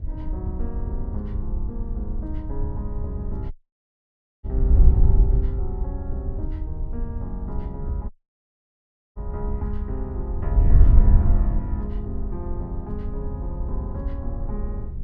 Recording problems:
hum; 50 Hz, harmonics up to 400 Hz, SNR 20 dB
wind noise; below 70 Hz, SNR -9 dB
dropout; at 3.5 s for 1 s and at 8 s for 1 s

